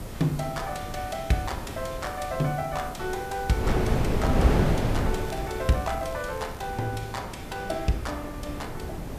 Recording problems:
background hiss; slope +2 dB per octave, SNR 18 dB
wind on the microphone; below 400 Hz, SNR 0 dB
crackle; from 5 to 6.5 s; loose cable, SNR 21 dB

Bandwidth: 14.5 kHz